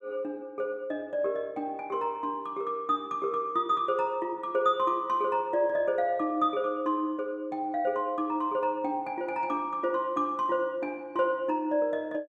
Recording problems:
none

